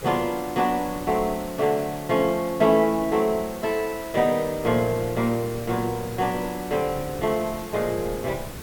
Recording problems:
hiss; SNR 16 dB
wind on the microphone; below 360 Hz, SNR 18 dB

